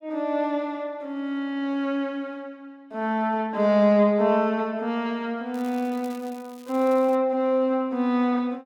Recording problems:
crackling; from 5.5 to 7 s; loose cable, SNR 26 dB

